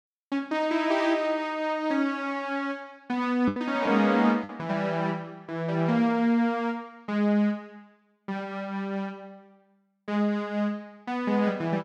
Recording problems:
lost packets; 1.4% of the sound replaced, filled with the last packet

